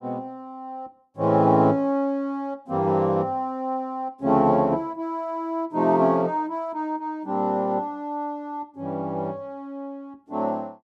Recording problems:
none

